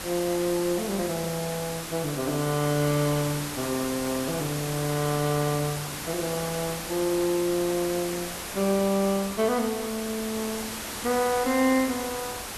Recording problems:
background hiss; slope -2 dB per octave, SNR 6 dB

